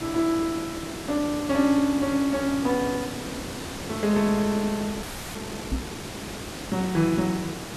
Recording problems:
hiss; slope -4 dB per octave, SNR 9 dB
frozen audio; at 5 s
microphone thump; at 5.5 s; peak 0 dB vs average level

